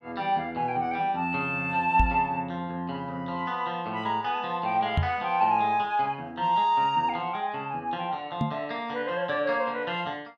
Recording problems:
knock on the microphone; at 2 s, at 5 s and at 8.5 s; peak +6 dB vs average level

